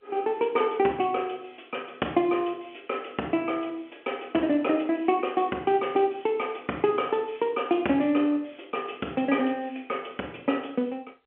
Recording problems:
phone line; 220 Hz to 3.4 kHz, G.711

